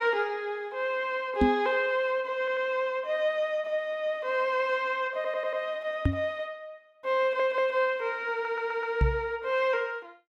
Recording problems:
knock on the microphone; at 1.5 s, at 6 s and at 9 s; peak +7 dB vs average level
stutter; 4 times, first at 2.5 s

